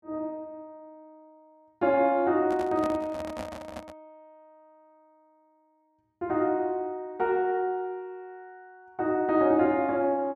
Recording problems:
microphone handling noise; from 2.5 to 4 s; peak -6 dB vs average level

